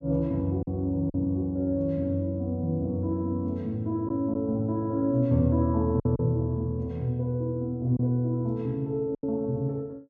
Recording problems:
packet loss; 3% of the sound replaced, filled with silence

